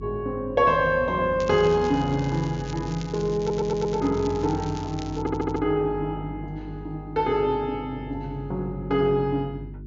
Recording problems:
treble cut off; nothing above 7.2 kHz
hum; 50 Hz, harmonics up to 400 Hz, SNR 14 dB
crackling; from 1.5 to 5.5 s; loose cable, SNR 19 dB
audio stuttering; at 3.5 s and at 5 s

